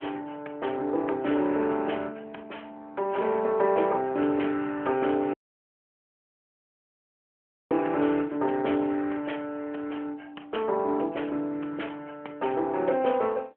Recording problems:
telephone audio; 300 Hz to 3.3 kHz, AMR-NB
dropout; at 5.5 s for 2.5 s

